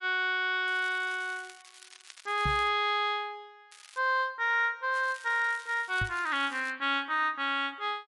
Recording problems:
lossy compression; MP3, log-spectral distance 4 dB, nothing above 9.5 kHz
crackle; from 0.5 to 2.5 s, at 3.5 s and from 5 to 6.5 s; loose cable, SNR 22 dB
microphone bump; at 2.5 s and at 6 s; peak -2 dB vs average level

